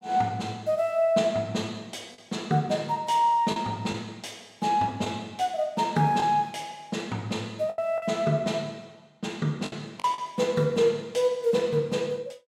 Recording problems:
lost packets; 3% of the sound replaced, filled with the last packet

